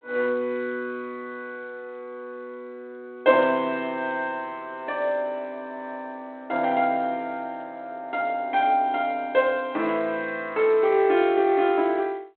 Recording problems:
phone line; 220 Hz to 3.6 kHz, G.726

